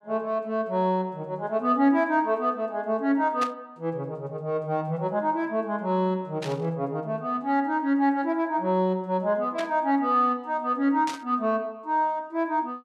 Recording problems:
burst of static; 4 times, first at 3.5 s; peak -4 dB vs average level

